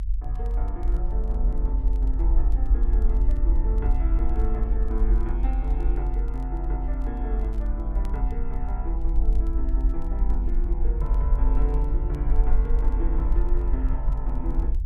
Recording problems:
low-frequency rumble; below 48 Hz, strongest tone 46 Hz, SNR -10 dB
crackle; vinyl, SNR 28 dB

